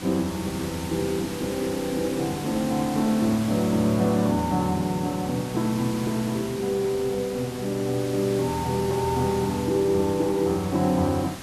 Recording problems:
background hiss; slope -2 dB per octave, SNR 12 dB

